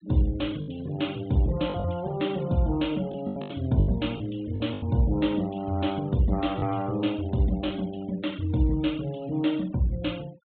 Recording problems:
treble missing; nothing above 4 kHz
denoising artefacts; signal-to-artefact ratio 22 dB
packet loss; 6% of the sound replaced, filled with the last packet

